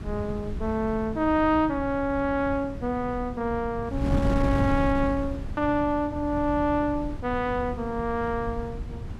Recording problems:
wind noise; below 170 Hz, SNR 7 dB

